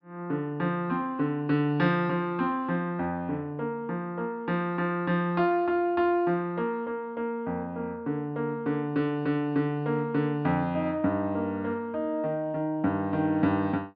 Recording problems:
treble missing; nothing above 5.5 kHz

